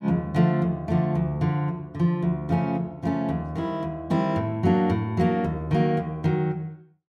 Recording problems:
none

